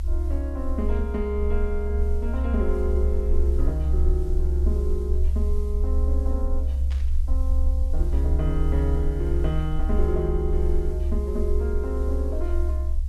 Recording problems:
hiss; SNR 25 dB
rumble; below 68 Hz, SNR -5 dB
burst of static; at 7 s; peak -9 dB vs average level

